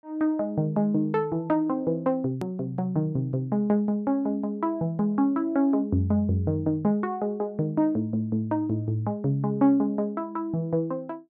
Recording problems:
edit click; at 2.5 s

